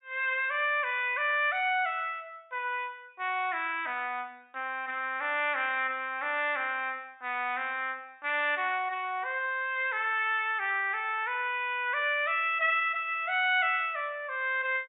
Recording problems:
low-pass filter; nothing above 4 kHz

